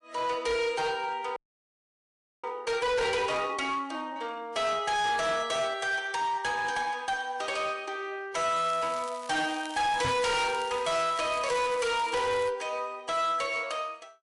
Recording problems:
lossy compression; MP3, log-spectral distance 3 dB
distortion; hard clipping, uneven, signal-to-distortion ratio 8 dB
frozen audio; at 1.5 s for 1 s
crackling; from 8.5 to 12 s; loose cable, SNR 17 dB
microphone thump; at 10 s; peak -1 dB vs average level

